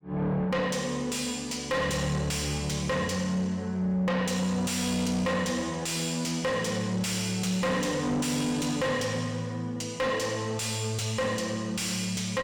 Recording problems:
distorted audio; soft clipping, signal-to-distortion ratio 6 dB

